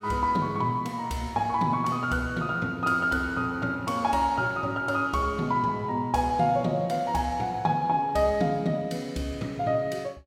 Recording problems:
none

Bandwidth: 17 kHz